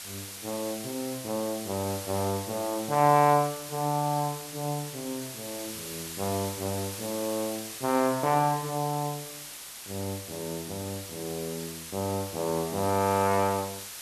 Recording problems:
hiss; slope +1 dB per octave, SNR 9 dB

